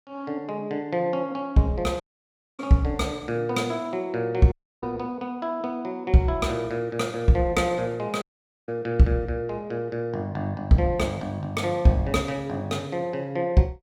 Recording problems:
dropout; at 2 s for 0.5 s, at 4.5 s and at 8 s

